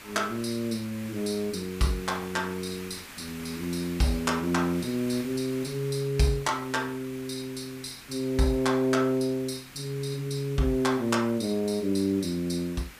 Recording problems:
hiss; SNR 16 dB

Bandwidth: 15 kHz